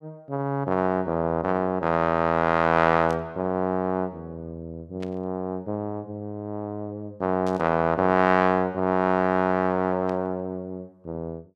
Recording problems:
static burst; 4 times, first at 3 s; peak -14 dB vs average level

